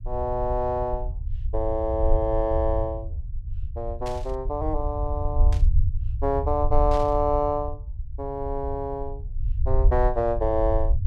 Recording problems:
rumble; below 70 Hz, SNR 3 dB
burst of static; at 4 s, at 5.5 s and at 7 s; peak -10 dB vs average level

